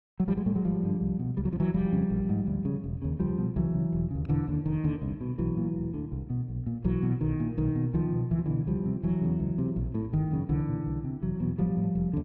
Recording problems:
none

